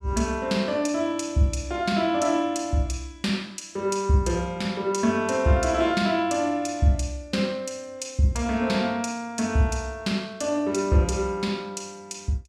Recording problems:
none

